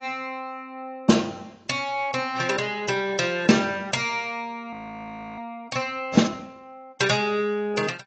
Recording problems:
lossy compression; AAC, log-spectral distance 3 dB
frozen audio; at 4.5 s for 0.5 s

